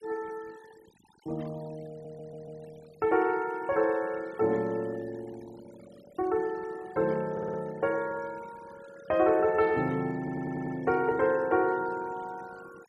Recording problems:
noise reduction artefacts; signal-to-artefact ratio 23 dB
stutter; at 2 s, at 7.5 s and at 10 s

